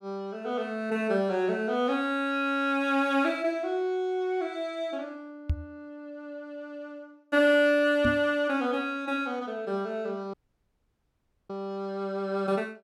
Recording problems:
microphone thump; at 5.5 s and at 8 s; peak +3 dB vs average level
dropout; at 10 s for 1 s

